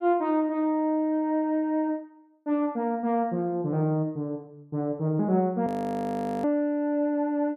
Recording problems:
audio freezing; at 5.5 s for 1 s

